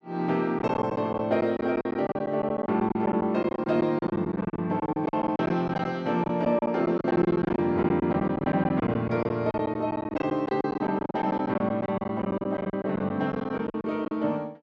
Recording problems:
lost packets; 16% of the sound replaced, filled with silence

